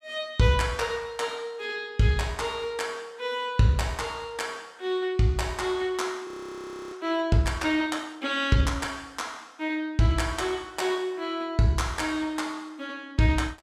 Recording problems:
audio freezing; at 6.5 s for 0.5 s

